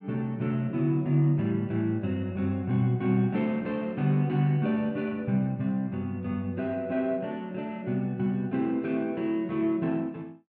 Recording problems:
none

